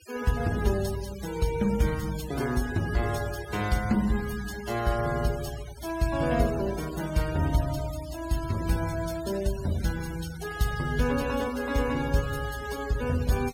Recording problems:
denoising artefacts; signal-to-artefact ratio 15 dB

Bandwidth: 16.5 kHz